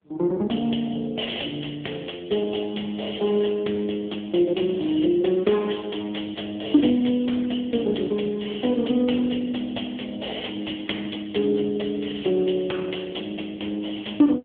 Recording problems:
phone line; 220 Hz to 3.6 kHz, AMR-NB

